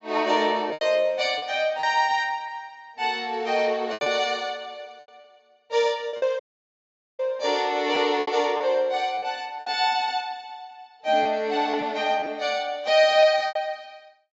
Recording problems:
treble missing; nothing above 8 kHz
packet loss; 7% of the sound replaced, filled with repeated pitch periods
audio cutting out; at 6.5 s for 1 s

